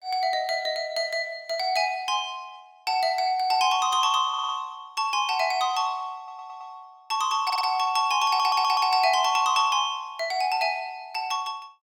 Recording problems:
stutter; 4 times, first at 4.5 s

